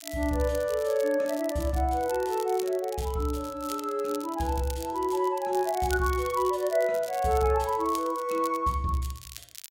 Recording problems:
crackling; vinyl, SNR 16 dB

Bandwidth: 16 kHz